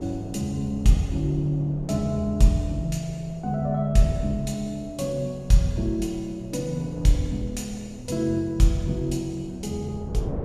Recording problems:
wind on the microphone; below 350 Hz, SNR 15 dB

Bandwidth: 14.5 kHz